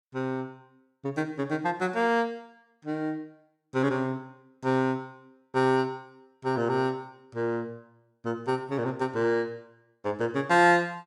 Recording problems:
none

